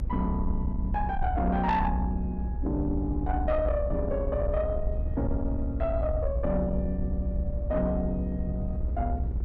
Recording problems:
distortion; soft clipping, signal-to-distortion ratio 12 dB
rumble; below 72 Hz, SNR 2 dB
wind noise; below 180 Hz, SNR 9 dB

